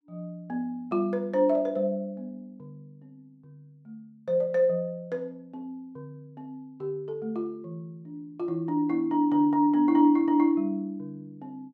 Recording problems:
none

